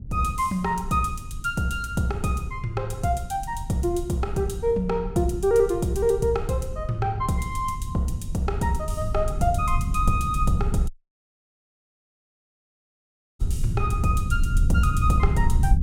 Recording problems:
low-frequency rumble; below 94 Hz, SNR 4 dB
dropout; at 11 s for 2.5 s

